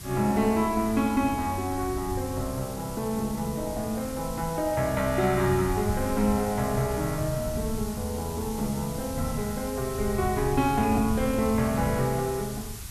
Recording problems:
background hiss; SNR 13 dB
rumble; below 120 Hz, SNR 11 dB

